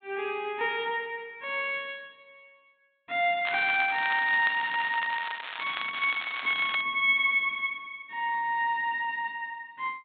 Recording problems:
treble cut off; nothing above 4 kHz
crackle; from 3.5 to 7 s; loose cable, SNR 10 dB

